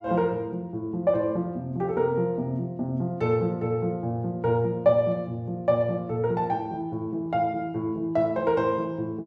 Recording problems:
none

